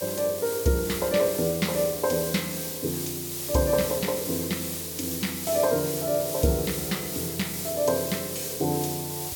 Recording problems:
hiss; SNR 4 dB

